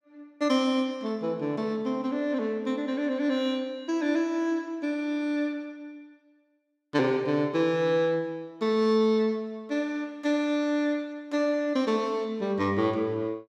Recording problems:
none

